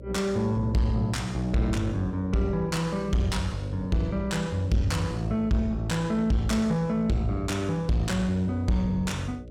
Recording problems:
distortion; soft clipping, signal-to-distortion ratio 7 dB
hum; 60 Hz, harmonics up to 600 Hz, SNR 17 dB

